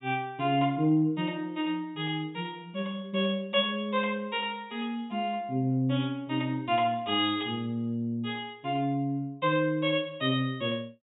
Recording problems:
treble missing; nothing above 4 kHz

